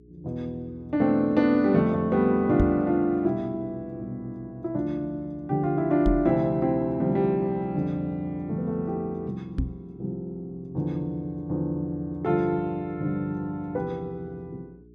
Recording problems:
electrical hum; 60 Hz, harmonics up to 420 Hz, SNR 25 dB
knock on the microphone; at 2.5 s, at 6 s and at 9.5 s; peak +5 dB vs average level

